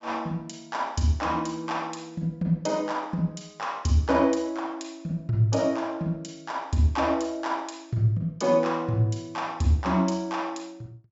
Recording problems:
treble cut off; nothing above 8 kHz

